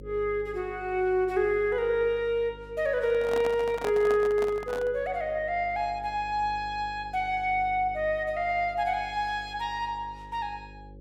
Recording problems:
electrical hum; 50 Hz, harmonics up to 550 Hz, SNR 20 dB
microphone handling noise; from 3 to 5 s; peak -3 dB vs average level

